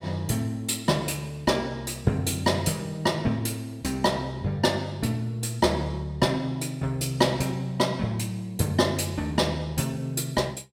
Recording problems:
none

